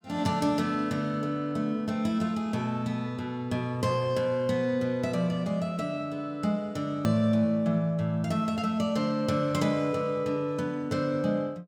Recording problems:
hard cut with a click; at 7 s

